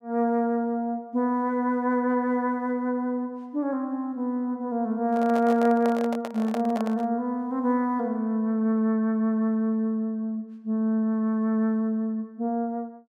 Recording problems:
microphone handling noise; from 5 to 7 s; peak -4 dB vs average level

